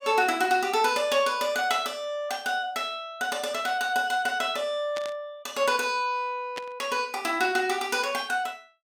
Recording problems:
static burst; at 5 s and at 6.5 s; peak -5 dB vs average level

